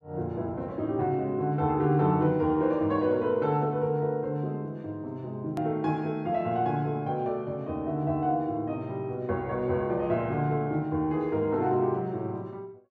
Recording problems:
click at an edit; at 5.5 s

